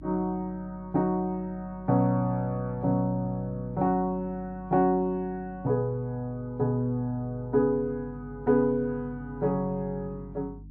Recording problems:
electrical hum; 50 Hz, harmonics up to 300 Hz, SNR 18 dB

